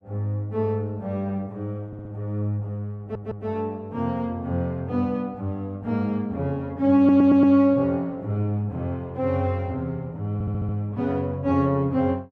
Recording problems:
audio stuttering; 4 times, first at 2 s

